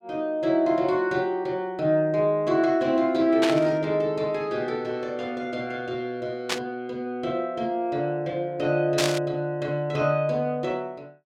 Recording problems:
static burst; at 3.5 s, at 6.5 s and at 9 s; peak +4 dB vs average level

